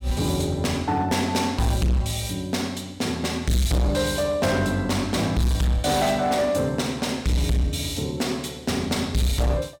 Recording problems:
distortion; hard clipping, signal-to-distortion ratio 8 dB

